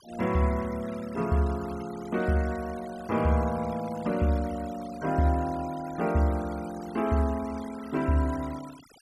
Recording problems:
noise reduction artefacts; signal-to-artefact ratio 19 dB

